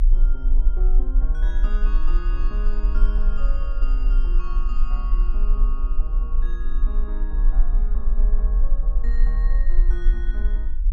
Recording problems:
low-frequency rumble; below 38 Hz, SNR -15 dB

